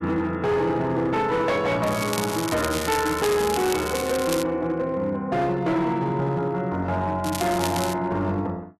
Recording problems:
distorted audio; hard clipping, signal-to-distortion ratio 11 dB
crackling; from 2 to 4.5 s and at 7 s; loose cable, SNR 8 dB

